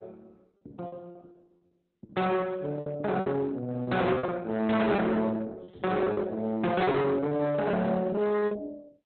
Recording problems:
lossy compression; Opus, log-spectral distance 3 dB, nothing above 4 kHz
distortion; hard clipping, uneven, signal-to-distortion ratio 6 dB
lost packets; 12% of the sound replaced, filled with repeated pitch periods

